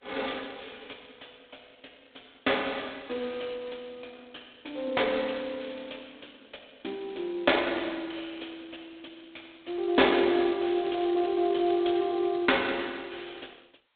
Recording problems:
phone line; 280 Hz to 3.7 kHz, G.726

